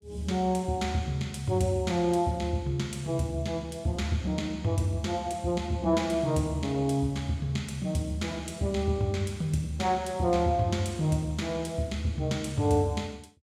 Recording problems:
none

